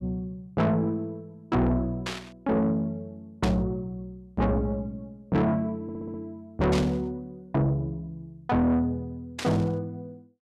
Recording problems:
distorted audio; soft clipping, signal-to-distortion ratio 8 dB
burst of static; 4 times, first at 2 s; peak -1 dB vs average level
audio stuttering; at 6 s

